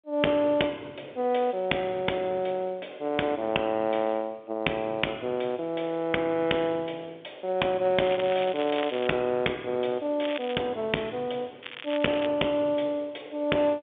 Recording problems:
telephone audio; 190 Hz to 3.6 kHz, G.711
distorted audio; hard clipping, uneven, signal-to-distortion ratio 12 dB
crackling; from 8 to 9 s, at 10 s and at 12 s; loose cable, SNR 12 dB

